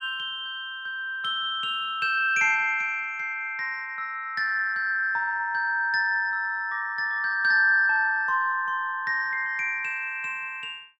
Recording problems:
none

